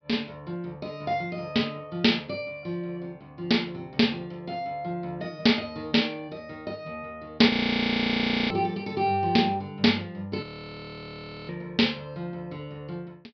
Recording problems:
low-pass filter; nothing above 5.5 kHz
frozen audio; at 7.5 s for 1 s and at 10 s for 1 s

